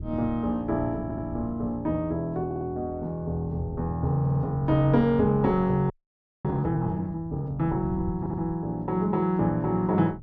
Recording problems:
treble missing; nothing above 8 kHz
wind on the microphone; below 170 Hz, SNR 14 dB
audio stuttering; 4 times, first at 1 s
frozen audio; at 6 s for 0.5 s

